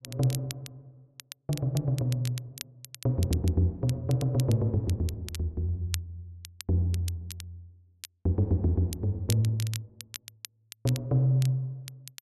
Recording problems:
crackle; vinyl, SNR 15 dB

